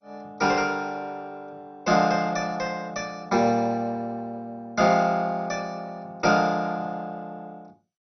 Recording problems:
codec artefacts; MP2, log-spectral distance 3 dB, nothing above 6 kHz

